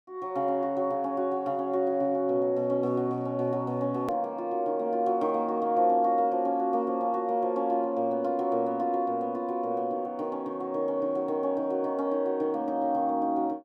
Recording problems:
edit click; at 4 s

